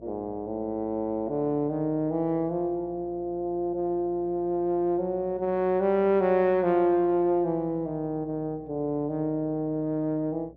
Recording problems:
mains hum; 60 Hz, harmonics up to 660 Hz, SNR 25 dB

